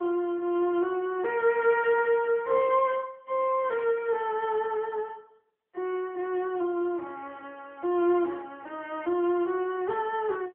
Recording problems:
telephone audio; 300 Hz to 3.1 kHz, AMR-NB

